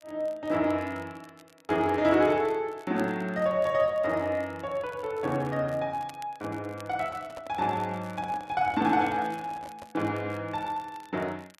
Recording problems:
crackling; vinyl, SNR 27 dB
handling noise; from 7 to 10 s; peak -11 dB vs average level

